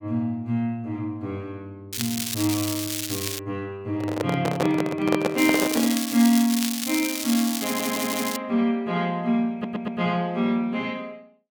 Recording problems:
crackling; from 2 to 3.5 s and from 5.5 to 8.5 s; loose cable, SNR 4 dB
microphone handling noise; from 4 to 6 s; peak +5 dB vs average level
audio stuttering; at 7.5 s and at 9.5 s

